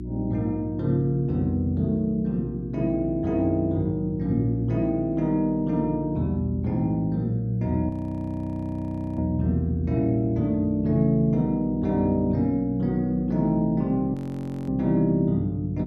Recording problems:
electrical hum; 60 Hz, harmonics up to 360 Hz, SNR 13 dB
audio freezing; at 8 s for 1.5 s and at 14 s for 0.5 s

